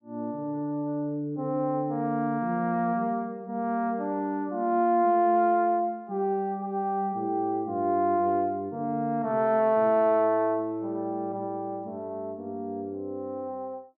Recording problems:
none

